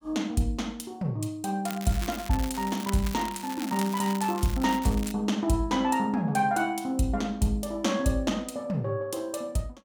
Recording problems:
crackling; from 1.5 to 5 s; loose cable, SNR 12 dB

